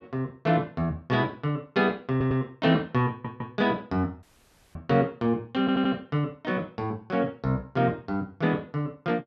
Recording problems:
stutter; at 2 s, at 3 s and at 5.5 s
audio cutting out; at 4 s for 0.5 s

